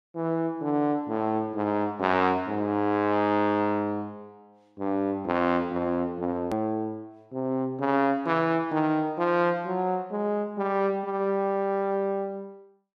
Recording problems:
hard cut with a click; at 6.5 s

